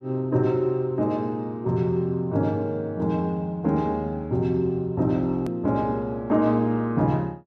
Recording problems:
click at an edit; at 5.5 s

